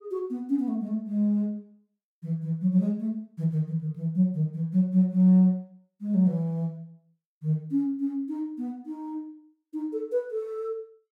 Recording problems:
none

